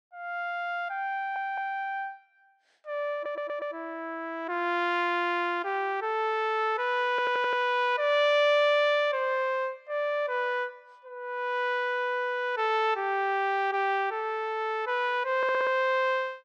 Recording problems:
audio stuttering; 4 times, first at 1 s

